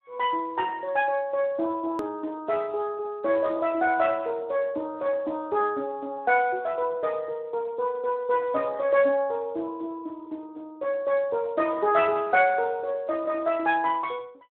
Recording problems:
phone line; 280 Hz to 3.3 kHz, Speex
hard cut with a click; at 2 s

